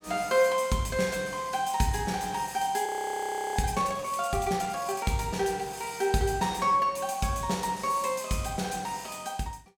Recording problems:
frozen audio; at 3 s for 0.5 s

